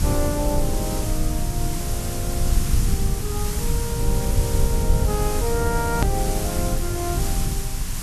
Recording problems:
hiss; slope -1 dB per octave, SNR 2 dB
rumble; below 100 Hz, strongest tone 22 Hz, SNR -3 dB
click at an edit; at 6 s

